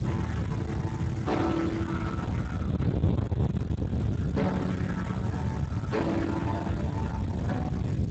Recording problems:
codec artefacts; Speex, log-spectral distance 3 dB, nothing above 7.3 kHz
distortion; soft clipping, signal-to-distortion ratio 8 dB
background hiss; slope 0 dB per octave, SNR 22 dB
wind on the microphone; below 250 Hz, SNR -1 dB

